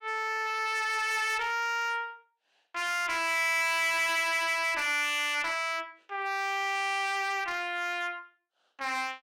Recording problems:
distortion; hard clipping, signal-to-distortion ratio 7 dB

